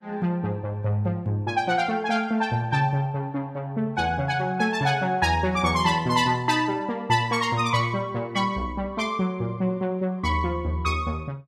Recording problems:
lossy compression; Vorbis, log-spectral distance 2 dB, nothing above 14.7 kHz

